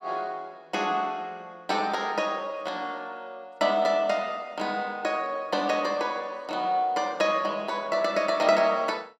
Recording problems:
none

